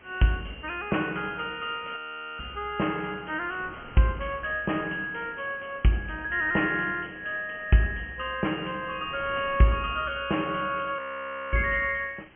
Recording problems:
low-pass filter; nothing above 3.1 kHz
background hiss; SNR 25 dB
wind on the microphone; below 1.3 kHz, SNR 22 dB
frozen audio; at 2 s and at 11 s for 0.5 s

